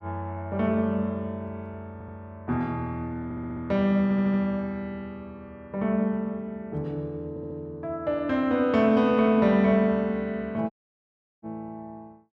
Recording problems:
stutter; 4 times, first at 2 s
audio cutting out; at 11 s for 0.5 s

